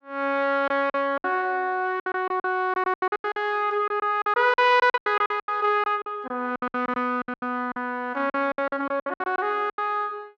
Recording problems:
lost packets; 17% of the sound replaced, filled with silence

